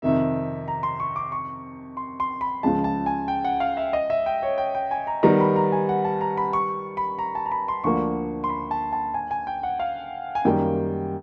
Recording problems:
none

